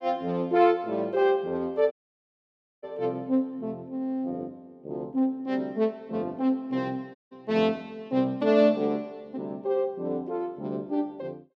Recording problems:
dropout; at 2 s for 1 s and at 7 s

